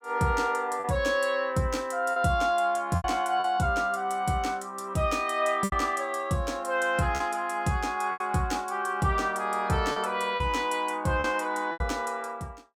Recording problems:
packet loss; 5% of the sound replaced, filled with repeated pitch periods

